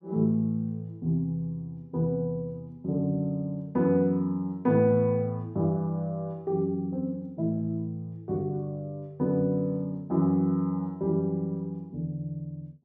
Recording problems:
none

